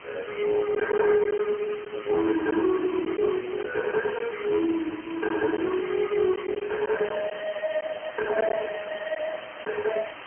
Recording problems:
phone line; 170 Hz to 3.2 kHz, AMR-NB, then MP3
distortion; soft clipping, signal-to-distortion ratio 12 dB
hiss; SNR 14 dB
packet loss; 3% of the sound replaced, filled with silence

